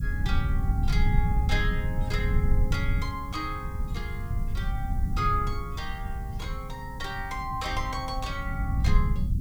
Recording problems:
hiss; slope +6 dB per octave, SNR 22 dB
rumble; below 100 Hz, SNR -4 dB

